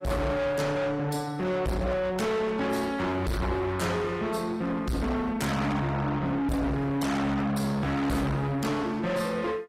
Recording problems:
codec artefacts; AAC, log-spectral distance 3 dB, nothing above 14.7 kHz
distorted audio; soft clipping, signal-to-distortion ratio 6 dB

